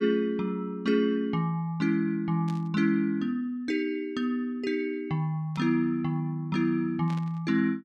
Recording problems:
static burst; at 2.5 s, at 5.5 s and at 7 s; peak -13 dB vs average level

